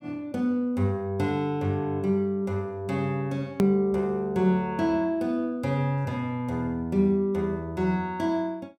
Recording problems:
hard cut with a click; at 3.5 s

